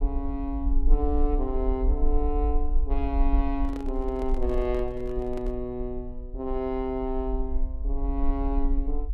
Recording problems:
rumble; below 46 Hz, strongest tone 22 Hz, SNR 0 dB
handling noise; from 3.5 to 5.5 s; peak -6 dB vs average level

